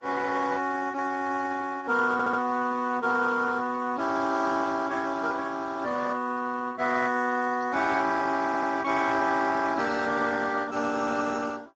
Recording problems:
codec artefacts; Vorbis, then Speex, log-spectral distance 5 dB, nothing above 7.3 kHz
stutter; at 2 s and at 8.5 s

